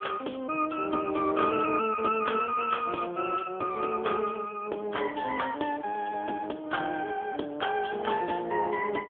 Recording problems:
phone line; 260 Hz to 3.4 kHz, AMR-NB

